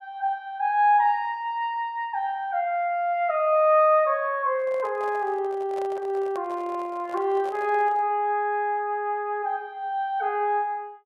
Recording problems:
microphone handling noise; from 4.5 to 8 s; peak -11 dB vs average level

